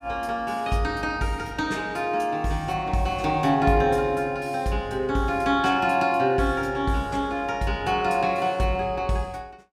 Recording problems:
none

